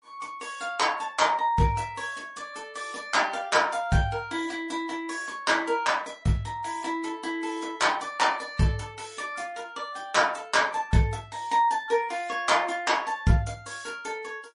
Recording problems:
codec artefacts; MP3, log-spectral distance 3 dB, nothing above 10.4 kHz

